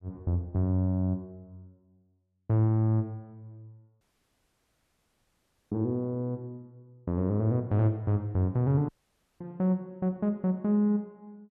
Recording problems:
dropout; at 4 s for 1.5 s and at 9 s for 0.5 s

